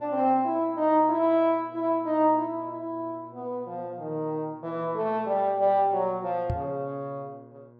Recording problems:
electrical hum; 60 Hz, harmonics up to 1.6 kHz, SNR 24 dB
microphone bump; at 6.5 s; peak 0 dB vs average level

